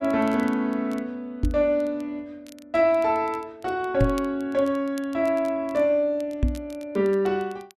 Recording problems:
crackling; vinyl, SNR 27 dB
microphone thump; at 1.5 s, at 4 s and at 6.5 s; peak +5 dB vs average level

